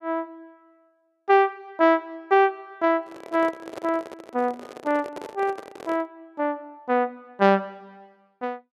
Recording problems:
handling noise; from 3 to 6 s; peak -7 dB vs average level

